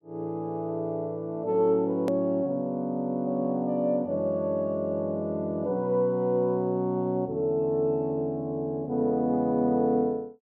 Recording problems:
hard cut with a click; at 2 s

